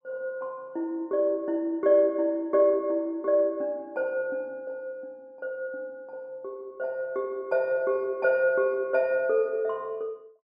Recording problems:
none

